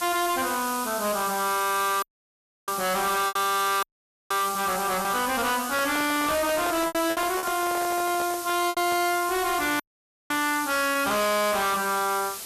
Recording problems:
distorted audio; hard clipping, signal-to-distortion ratio 6 dB
background hiss; slope +1 dB per octave, SNR 8 dB
packet loss; 4% of the sound replaced, filled with repeated pitch periods
audio cutting out; at 2 s for 0.5 s, at 4 s and at 10 s for 0.5 s
handling noise; from 5.5 to 9 s; peak -3 dB vs average level

